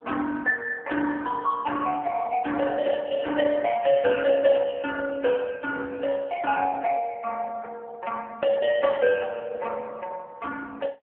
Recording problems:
phone line; 280 Hz to 2.2 kHz, AMR-NB

